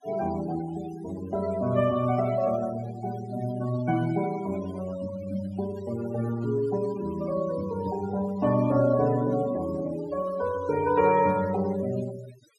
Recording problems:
noise reduction artefacts; signal-to-artefact ratio 16 dB

